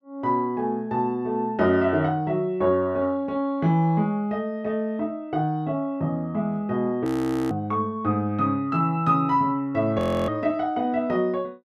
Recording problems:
audio freezing; at 7 s and at 10 s

